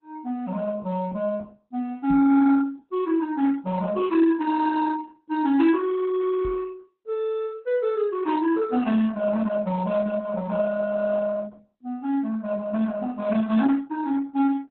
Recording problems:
lossy compression; Opus, log-spectral distance 3 dB, nothing above 4 kHz
microphone thump; at 2 s and at 6.5 s; peak -3 dB vs average level

